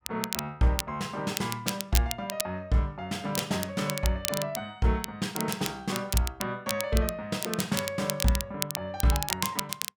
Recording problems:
crackle; vinyl, SNR 4 dB

